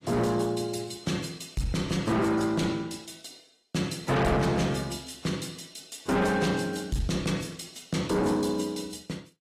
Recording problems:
lossy compression; AAC, log-spectral distance 5 dB, nothing above 13.5 kHz
distortion; soft clipping, signal-to-distortion ratio 6 dB

